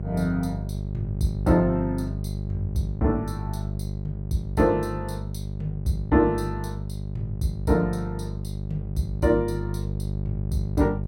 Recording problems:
hum; 50 Hz, harmonics up to 600 Hz, SNR 5 dB

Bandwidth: 16 kHz